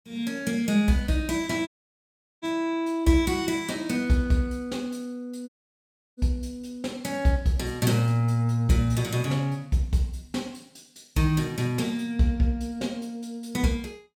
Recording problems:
dropout; at 1.5 s for 1 s and at 5.5 s for 0.5 s

